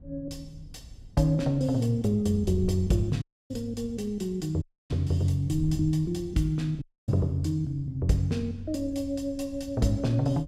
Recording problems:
wind on the microphone; below 110 Hz, SNR 16 dB
audio cutting out; at 3 s, at 4.5 s and at 7 s

